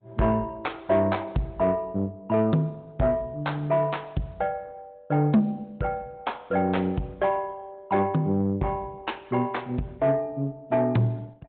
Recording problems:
treble missing; nothing above 4 kHz
lossy codec; Opus, log-spectral distance 2 dB
distorted audio; soft clipping, signal-to-distortion ratio 11 dB

